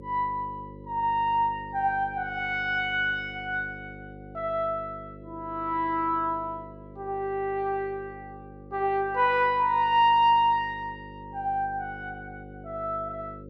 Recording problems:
hum; 50 Hz, harmonics up to 550 Hz, SNR 18 dB

